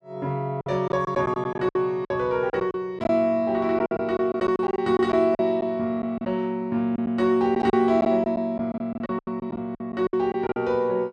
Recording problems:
lost packets; 12% of the sound replaced, filled with silence

